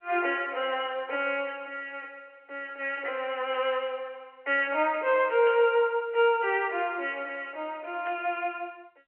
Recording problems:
telephone audio; 320 Hz to 3.2 kHz, G.711
burst of static; at 3.5 s, at 5.5 s and at 8 s; peak -11 dB vs average level

